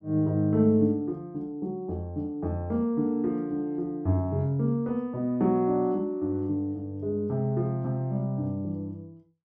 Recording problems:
none

